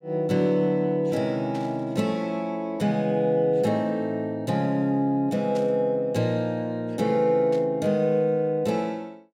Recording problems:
burst of static; at 1.5 s, at 5.5 s and at 7.5 s; peak -14 dB vs average level

